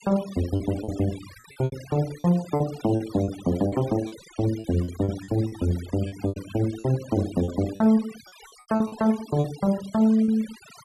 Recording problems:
denoising artefacts; signal-to-artefact ratio 18 dB
lost packets; 11% of the sound replaced, filled with repeated pitch periods

